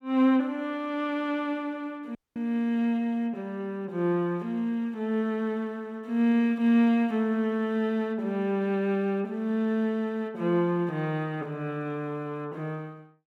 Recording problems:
audio cutting out; at 2 s

